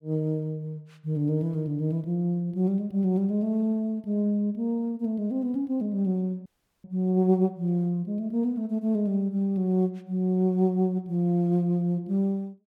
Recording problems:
audio freezing; at 6.5 s

